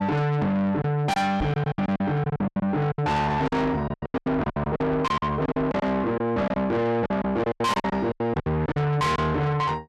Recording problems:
distortion; soft clipping, signal-to-distortion ratio 7 dB
packet loss; 16% of the sound replaced, filled with silence
microphone thump; at 1.5 s; peak 0 dB vs average level

